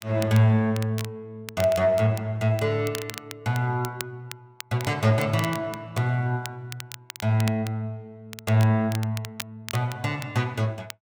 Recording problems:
crackle; vinyl, SNR 15 dB

